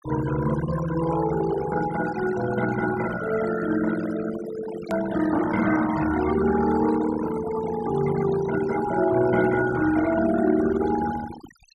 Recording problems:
denoising artefacts; signal-to-artefact ratio 11 dB
hard cut with a click; at 5 s

